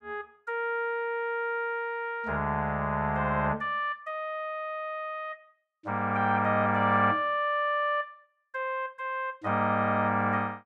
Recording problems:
none

